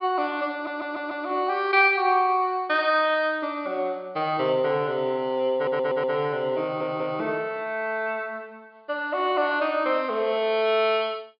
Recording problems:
treble cut off; nothing above 5 kHz
stutter; at 0.5 s, at 5.5 s and at 6.5 s

